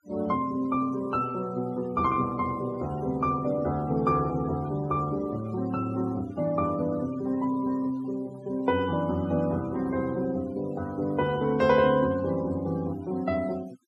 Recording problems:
noise reduction artefacts; signal-to-artefact ratio 22 dB

